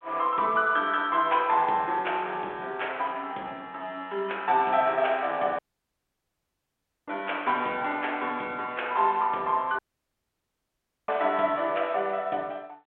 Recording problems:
telephone audio; 300 Hz to 3.6 kHz, G.726
audio cutting out; at 5.5 s for 1.5 s and at 10 s for 1.5 s

